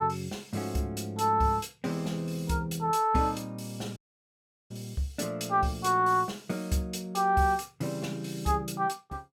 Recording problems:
audio cutting out; at 4 s for 0.5 s

